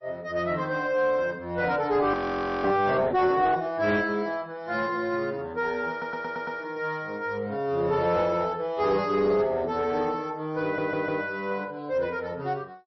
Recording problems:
codec artefacts; MP3, log-spectral distance 2 dB, nothing above 5.7 kHz
distortion; soft clipping, signal-to-distortion ratio 12 dB
audio freezing; at 2 s for 0.5 s
stutter; at 6 s and at 11 s

